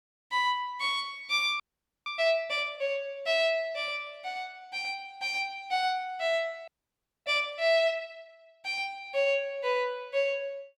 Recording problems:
frozen audio; at 1.5 s and at 6.5 s for 0.5 s

